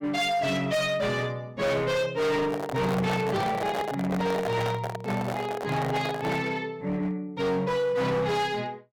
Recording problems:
distortion; hard clipping, signal-to-distortion ratio 7 dB
microphone handling noise; from 2.5 to 6.5 s; peak 0 dB vs average level

